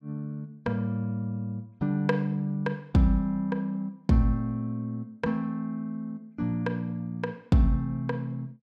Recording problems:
none

